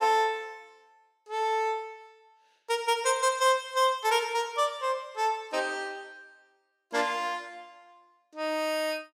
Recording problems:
none

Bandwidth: 17 kHz